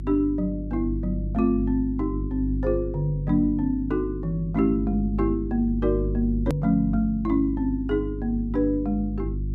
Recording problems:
electrical hum; 50 Hz, harmonics up to 350 Hz, SNR 6 dB
edit click; at 6.5 s

